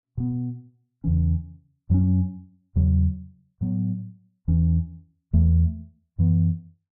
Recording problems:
none

